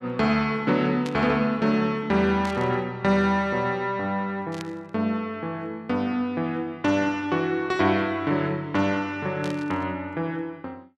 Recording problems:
static burst; 4 times, first at 1 s; peak -8 dB vs average level

